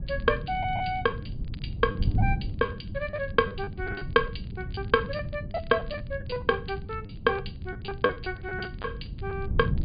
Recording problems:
low-pass filter; nothing above 4.9 kHz
wind on the microphone; below 140 Hz, SNR 6 dB
crackling; vinyl, SNR 29 dB
lost packets; 11% of the sound replaced, filled with the last packet

